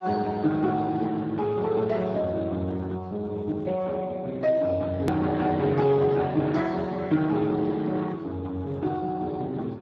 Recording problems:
codec artefacts; Speex, log-spectral distance 3 dB, nothing above 13.1 kHz
hard cut with a click; at 5 s

